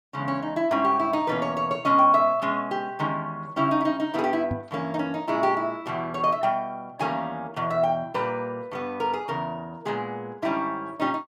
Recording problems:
microphone bump; at 4.5 s; peak -1 dB vs average level

